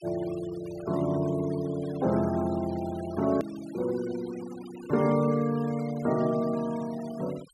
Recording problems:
denoising artefacts; signal-to-artefact ratio 19 dB
hard cut with a click; at 3.5 s

